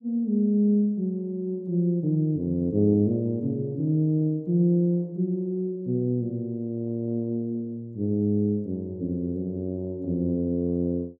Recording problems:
none

